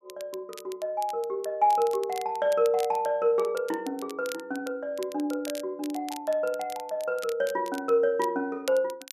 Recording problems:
crackle; vinyl, SNR 18 dB

